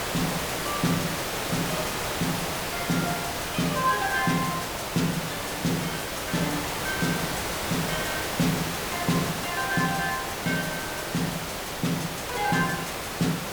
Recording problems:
background hiss; slope -3 dB per octave, SNR 0 dB

